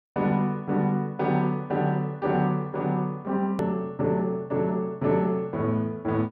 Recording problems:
hard cut with a click; at 3.5 s

